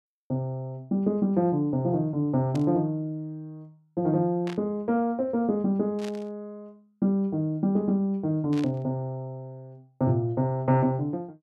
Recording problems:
static burst; 4 times, first at 2.5 s; peak -10 dB vs average level

